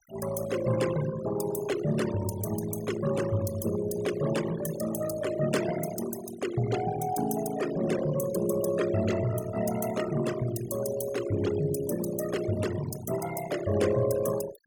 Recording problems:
denoising artefacts; signal-to-artefact ratio 10 dB

